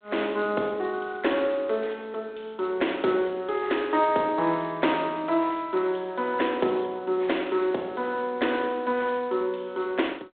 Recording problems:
phone line; 220 Hz to 3.8 kHz, G.726

